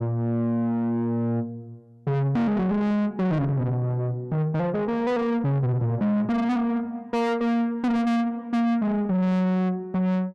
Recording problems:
distorted audio; soft clipping, signal-to-distortion ratio 6 dB

